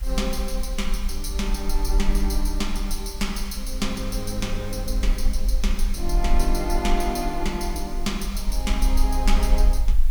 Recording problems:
hiss; slope -1 dB per octave, SNR 18 dB
low-frequency rumble; below 44 Hz, strongest tone 24 Hz, SNR -1 dB

